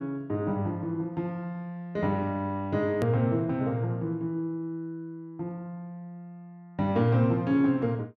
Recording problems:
hard cut with a click; at 3 s

